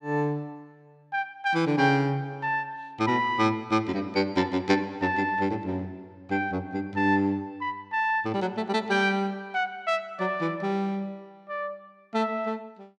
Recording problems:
none

